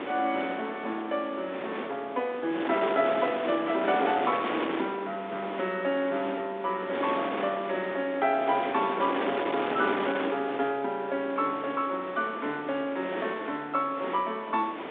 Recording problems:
telephone audio; 240 Hz to 4 kHz, G.726
wind on the microphone; below 1.7 kHz, SNR 6 dB

